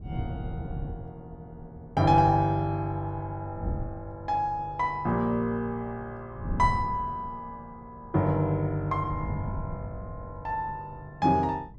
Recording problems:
wind noise; below 160 Hz, SNR 11 dB

